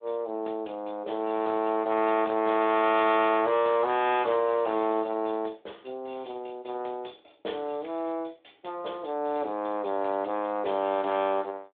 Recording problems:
phone line; 260 Hz to 3.5 kHz, Speex
distortion; hard clipping, signal-to-distortion ratio 11 dB

